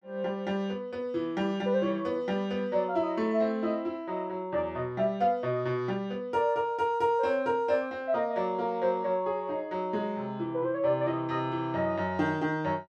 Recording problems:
none

